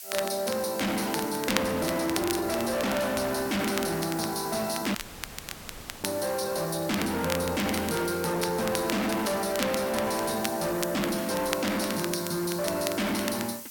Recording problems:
distortion; hard clipping, signal-to-distortion ratio 6 dB
hiss; SNR 12 dB
crackling; vinyl, SNR 10 dB
audio cutting out; at 5 s for 1 s

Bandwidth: 17 kHz